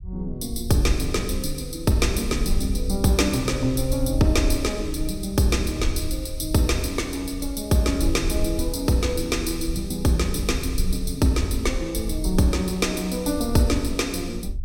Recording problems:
rumble; below 64 Hz, SNR 8 dB

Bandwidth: 16.5 kHz